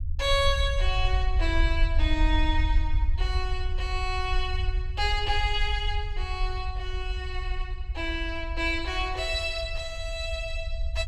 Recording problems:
low-frequency rumble; below 62 Hz, SNR 1 dB

